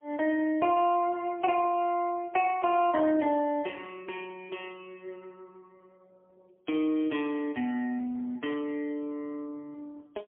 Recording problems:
phone line; 220 Hz to 3.2 kHz, AMR-NB, then MP3

